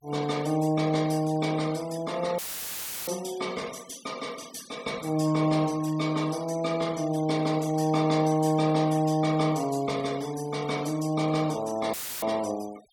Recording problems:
denoising artefacts; signal-to-artefact ratio 20 dB
audio cutting out; at 2.5 s for 0.5 s and at 12 s; filled with static

